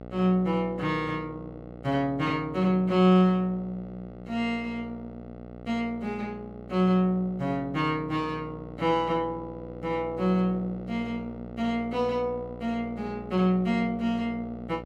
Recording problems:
electrical hum; 60 Hz, harmonics up to 1.5 kHz, SNR 15 dB

